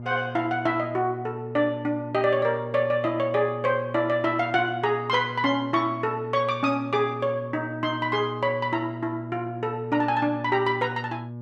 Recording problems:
mains hum; 60 Hz, harmonics up to 840 Hz, SNR 12 dB

